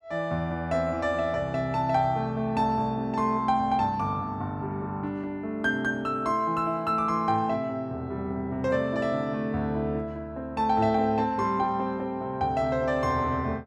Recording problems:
none

